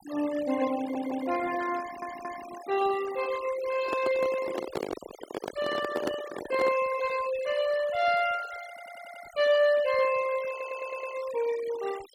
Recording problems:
noise reduction artefacts; signal-to-artefact ratio 15 dB
audio stuttering; 4 times, first at 1 s
microphone handling noise; from 4 to 7 s; peak +2 dB vs average level

